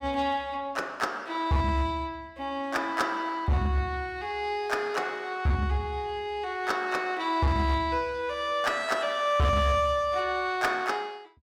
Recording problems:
distorted audio; hard clipping, uneven, signal-to-distortion ratio 11 dB

